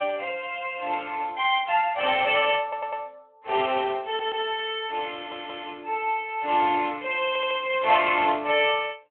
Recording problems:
phone line; 260 Hz to 3.5 kHz, Speex
audio stuttering; 4 times, first at 2.5 s

